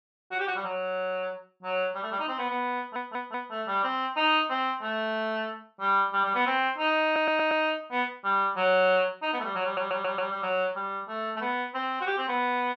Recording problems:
stutter; at 3 s, at 7 s and at 9.5 s

